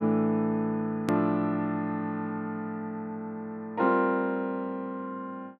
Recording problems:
hard cut with a click; at 1 s

